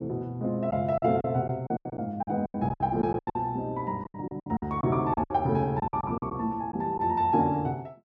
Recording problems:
packet loss; 13% of the sound replaced, filled with silence

